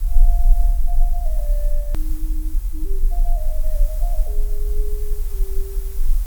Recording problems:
hiss; slope -2 dB per octave, SNR 2 dB
low-frequency rumble; below 36 Hz, strongest tone 22 Hz, SNR -16 dB
edit click; at 2 s

